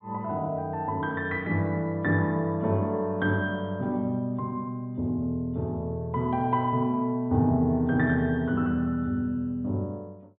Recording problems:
treble cut off; nothing above 3.8 kHz

